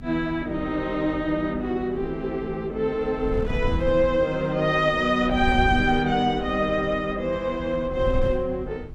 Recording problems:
hum; 50 Hz, harmonics up to 400 Hz, SNR 19 dB
wind noise; below 100 Hz, SNR 10 dB

